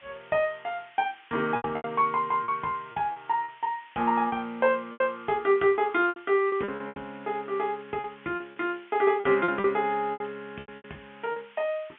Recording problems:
phone line; 220 Hz to 3.3 kHz, G.711
background hiss; SNR 25 dB
lost packets; 11% of the sound replaced, filled with repeated pitch periods

